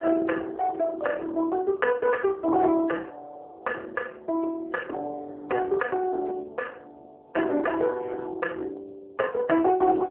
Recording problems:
telephone audio; 300 Hz to 2.4 kHz, AMR-NB

